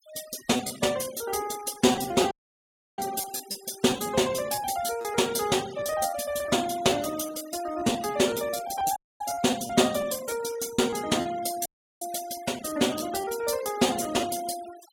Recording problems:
noise reduction artefacts; signal-to-artefact ratio 17 dB
lost packets; 9% of the sound replaced, filled with repeated pitch periods
audio cutting out; at 2.5 s for 0.5 s, at 9 s and at 12 s

